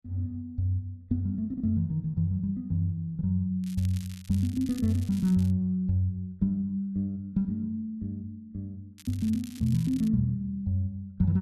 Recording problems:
crackling; from 3.5 to 5.5 s and from 9 to 10 s; loose cable, SNR 20 dB

